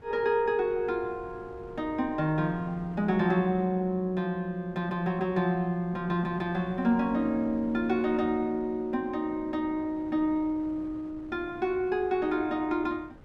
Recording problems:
wind noise; below 420 Hz, SNR 21 dB

